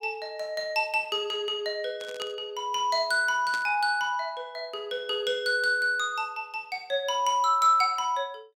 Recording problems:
burst of static; at 2 s and at 3.5 s; peak -7 dB vs average level

